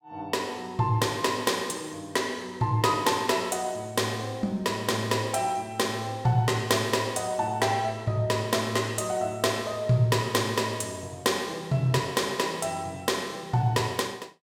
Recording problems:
none

